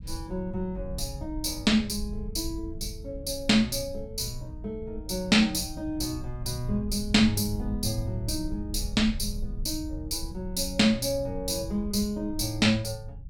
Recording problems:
rumble; below 86 Hz, SNR 11 dB

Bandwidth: 17.5 kHz